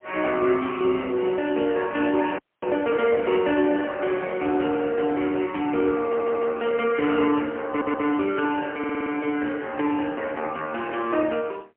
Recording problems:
telephone audio; 260 Hz to 3.4 kHz, AMR-NB, then MP3
frozen audio; at 2.5 s
stutter; at 6 s, at 7.5 s and at 9 s

